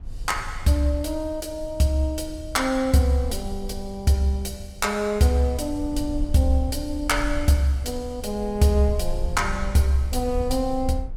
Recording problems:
low-frequency rumble; below 60 Hz, SNR 11 dB

